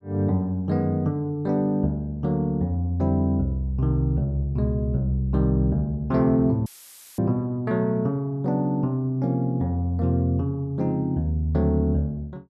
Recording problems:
dropout; at 6.5 s for 0.5 s; filled with static

